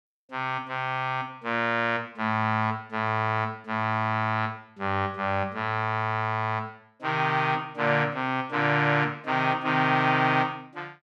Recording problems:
none

